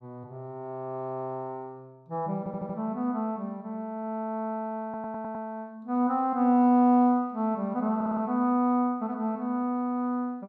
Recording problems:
audio stuttering; at 2.5 s, at 5 s and at 8 s

